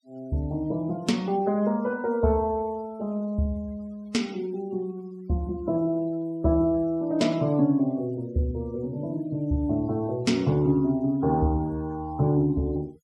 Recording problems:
denoising artefacts; signal-to-artefact ratio 28 dB

